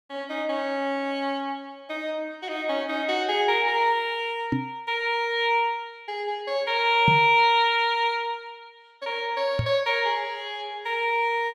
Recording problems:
microphone bump; at 4.5 s, at 7 s and at 9.5 s; peak +4 dB vs average level

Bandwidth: 16 kHz